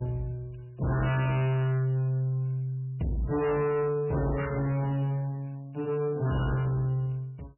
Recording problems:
lossy compression; MP3, log-spectral distance 3 dB, nothing above 2.4 kHz
distortion; soft clipping, signal-to-distortion ratio 6 dB

